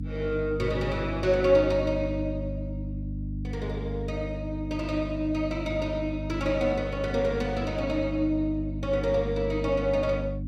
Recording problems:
hum; 50 Hz, harmonics up to 300 Hz, SNR 6 dB

